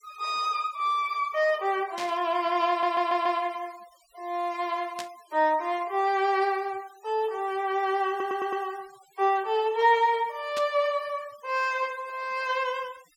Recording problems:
noise reduction artefacts; signal-to-artefact ratio 24 dB
static burst; at 2 s, at 5 s and at 11 s; peak -5 dB vs average level
stutter; at 2.5 s and at 8 s

